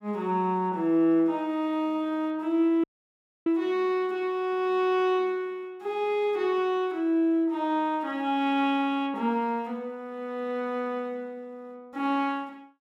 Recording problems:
audio cutting out; at 3 s for 0.5 s

